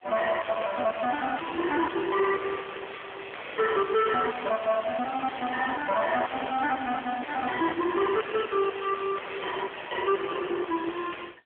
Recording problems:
telephone audio; 300 Hz to 3.3 kHz, AMR-NB
distortion; soft clipping, signal-to-distortion ratio 5 dB

